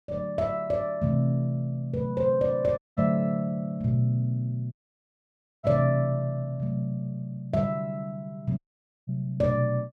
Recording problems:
dropout; at 3 s, at 4.5 s for 1 s and at 8.5 s

